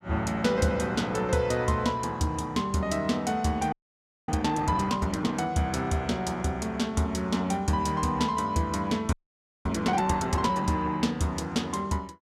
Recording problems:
frozen audio; at 3.5 s for 0.5 s and at 9 s for 0.5 s

